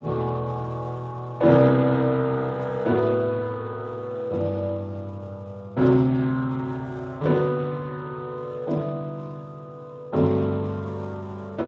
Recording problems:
lossy codec; Speex, log-spectral distance 2 dB

